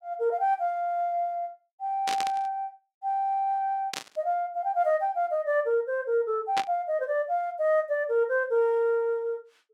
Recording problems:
burst of static; at 2 s, at 4 s and at 6.5 s; peak +1 dB vs average level

